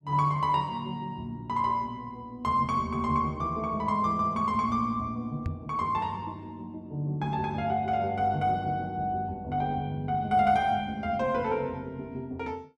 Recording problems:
knock on the microphone; at 5.5 s; peak 0 dB vs average level

